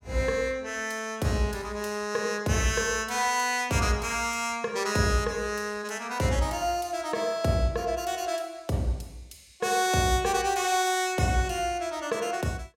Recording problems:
none

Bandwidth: 16.5 kHz